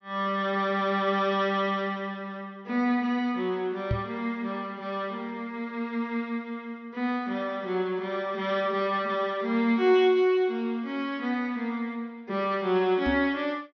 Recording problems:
treble missing; nothing above 6.3 kHz
knock on the microphone; at 4 s and at 13 s; peak +2 dB vs average level

